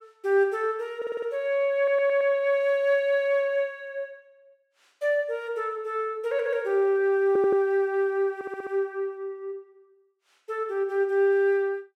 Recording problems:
stutter; 4 times, first at 1 s

